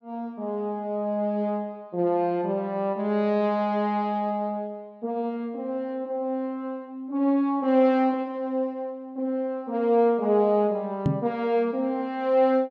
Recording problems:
knock on the microphone; at 11 s; peak +6 dB vs average level

